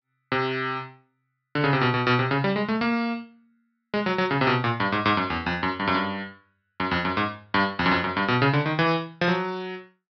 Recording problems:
treble cut off; nothing above 5.5 kHz

